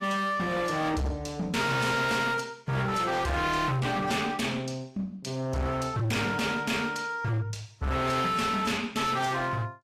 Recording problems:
lossy compression; AAC, log-spectral distance 3 dB, nothing above 16.6 kHz
distortion; hard clipping, signal-to-distortion ratio 7 dB

